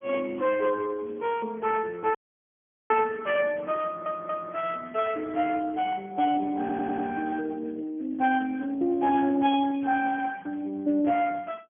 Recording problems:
telephone audio; 260 Hz to 2.8 kHz, Speex
dropout; at 2 s for 1 s
stutter; at 4 s and at 6.5 s

